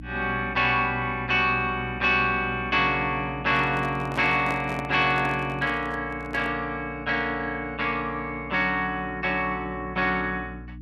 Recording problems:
hum; 60 Hz, harmonics up to 300 Hz, SNR 17 dB
microphone handling noise; from 3.5 to 6.5 s; peak -5 dB vs average level

